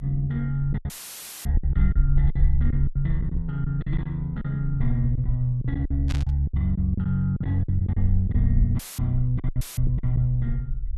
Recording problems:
low-frequency rumble; below 54 Hz, SNR 5 dB
packet loss; 12% of the sound replaced, filled with silence
dropout; at 1 s for 0.5 s, at 9 s and at 9.5 s; filled with static
static burst; at 6 s; peak -6 dB vs average level

